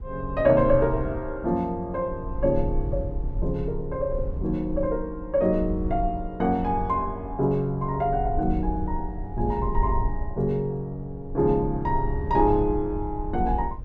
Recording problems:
low-frequency rumble; below 68 Hz, SNR 8 dB

